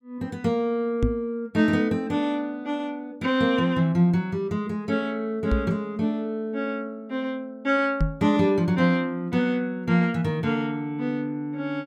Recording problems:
knock on the microphone; at 1 s, at 5.5 s and at 8 s; peak +5 dB vs average level

